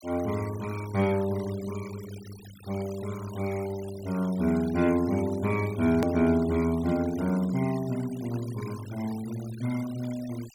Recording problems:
noise reduction artefacts; signal-to-artefact ratio 18 dB
edit click; at 6 s

